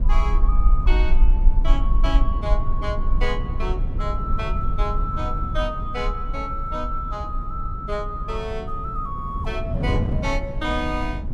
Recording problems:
low-frequency rumble; below 44 Hz, SNR -2 dB
wind on the microphone; below 170 Hz, SNR 2 dB

